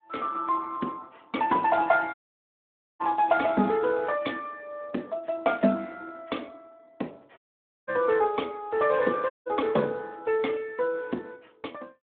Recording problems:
phone line; 190 Hz to 3.6 kHz, Speex
dropout; at 2 s for 1 s, at 7.5 s and at 9.5 s

